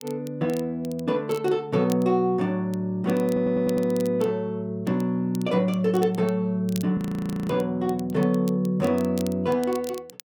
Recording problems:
crackle; vinyl, SNR 21 dB
audio stuttering; at 3.5 s
audio freezing; at 7 s for 0.5 s

